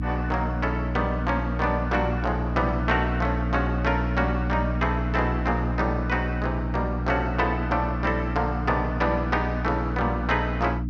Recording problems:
electrical hum; 60 Hz, harmonics up to 300 Hz, SNR 2 dB

